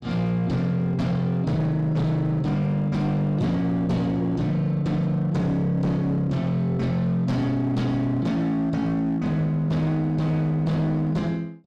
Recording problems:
distorted audio; hard clipping, signal-to-distortion ratio 10 dB

